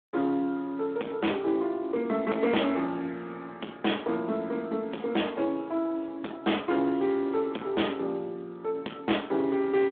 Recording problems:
telephone audio; 220 Hz to 3.5 kHz, Speex
distortion; soft clipping, signal-to-distortion ratio 7 dB

